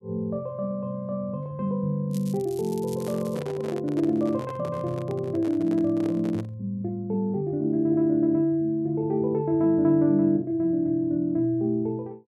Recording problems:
crackle; from 2 to 3.5 s; loose cable, SNR 21 dB
microphone handling noise; from 3 to 6.5 s; peak -7 dB vs average level

